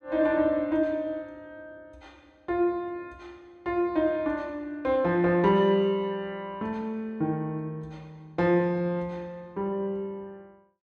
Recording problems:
none

